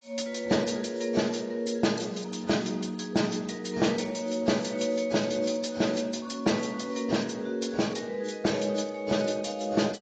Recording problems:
lossy compression; AAC, log-spectral distance 5 dB, nothing above 7.3 kHz

